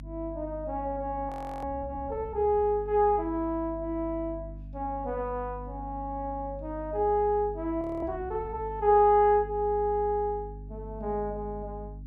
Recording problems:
electrical hum; 50 Hz, harmonics up to 300 Hz, SNR 14 dB
audio freezing; at 1.5 s and at 8 s

